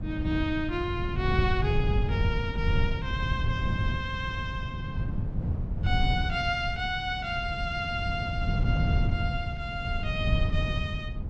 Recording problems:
wind on the microphone; below 140 Hz, SNR -1 dB

